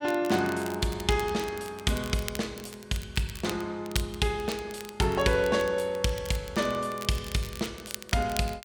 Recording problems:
crackle; vinyl, SNR 14 dB

